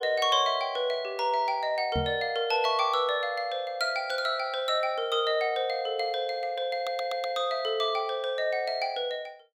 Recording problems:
microphone bump; at 2 s; peak -1 dB vs average level
stutter; at 7 s

